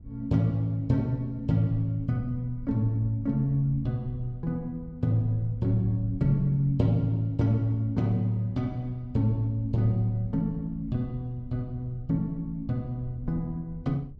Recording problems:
rumble; below 90 Hz, SNR 17 dB

